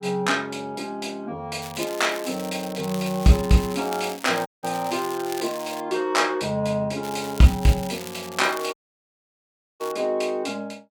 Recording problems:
crackle; from 1.5 to 6 s and from 7 to 10 s; loose cable, SNR 14 dB
audio cutting out; at 4.5 s and at 8.5 s for 1 s

